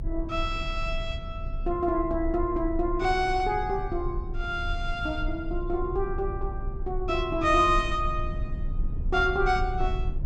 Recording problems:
rumble; below 64 Hz, strongest tone 28 Hz, SNR 7 dB

